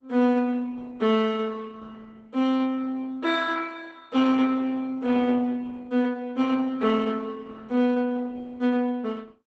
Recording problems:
lossy compression; Opus, log-spectral distance 3 dB, nothing above 7.8 kHz

